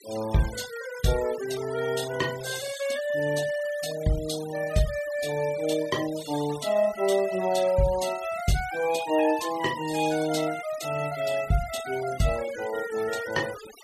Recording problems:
noise reduction artefacts; signal-to-artefact ratio 14 dB

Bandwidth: 14.5 kHz